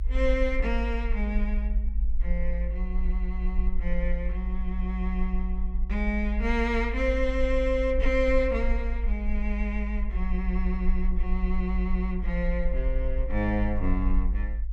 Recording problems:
low-frequency rumble; below 52 Hz, SNR 0 dB

